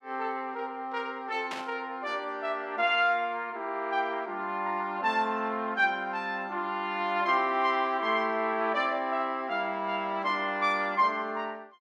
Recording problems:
static burst; at 1.5 s; peak -4 dB vs average level

